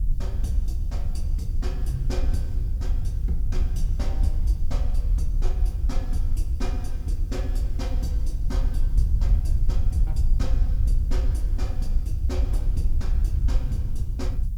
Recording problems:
hiss; slope +4 dB per octave, SNR 23 dB
wind on the microphone; below 62 Hz, SNR -10 dB

